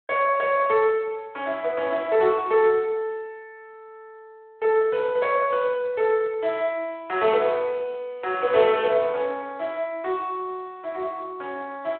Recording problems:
telephone audio; 340 Hz to 3.6 kHz, Speex

